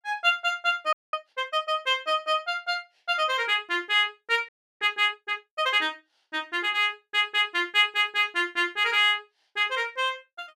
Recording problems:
frozen audio; at 1 s and at 4.5 s

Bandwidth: 14.5 kHz